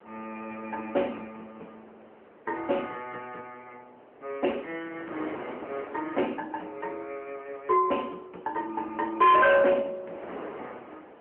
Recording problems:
phone line; 280 Hz to 3.2 kHz, AMR-NB
distorted audio; hard clipping, signal-to-distortion ratio 12 dB
wind on the microphone; below 1 kHz, SNR 18 dB

